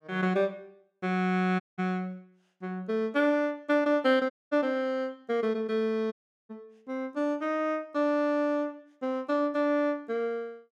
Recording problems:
audio cutting out; at 1.5 s, at 4.5 s and at 6 s

